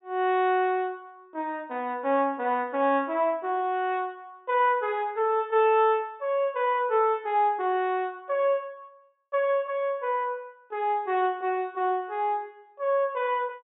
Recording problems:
low-pass filter; nothing above 4 kHz

